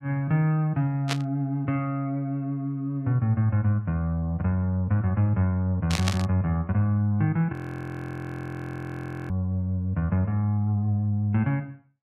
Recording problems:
static burst; at 1 s and at 6 s; peak +2 dB vs average level
frozen audio; at 7.5 s for 2 s

